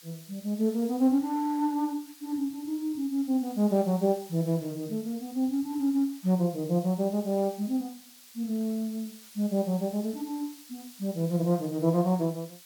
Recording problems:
background hiss; slope +3 dB per octave, SNR 20 dB

